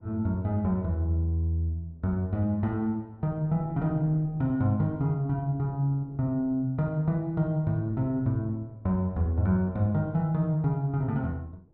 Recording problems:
wind on the microphone; below 330 Hz, SNR 24 dB

